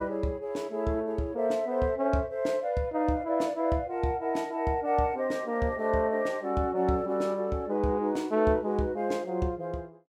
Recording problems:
none

